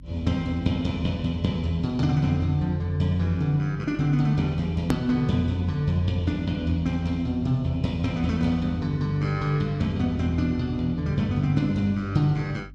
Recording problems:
hum; 50 Hz, harmonics up to 300 Hz, SNR 20 dB
click at an edit; at 5 s

